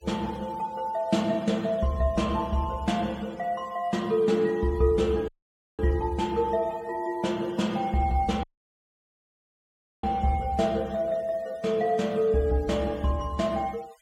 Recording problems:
denoising artefacts; signal-to-artefact ratio 25 dB
audio cutting out; at 5.5 s for 0.5 s and at 8.5 s for 1.5 s

